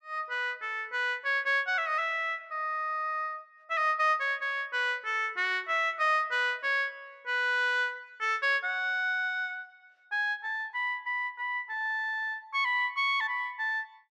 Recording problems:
none

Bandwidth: 13 kHz